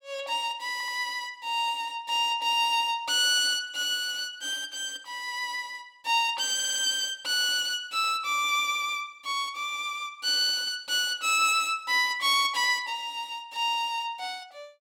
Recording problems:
audio stuttering; at 0.5 s and at 6.5 s

